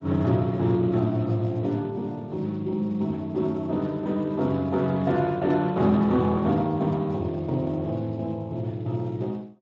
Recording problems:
lossy compression; Speex, log-spectral distance 2 dB

